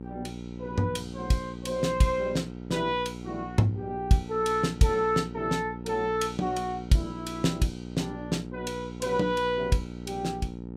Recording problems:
hum; 60 Hz, harmonics up to 900 Hz, SNR 11 dB

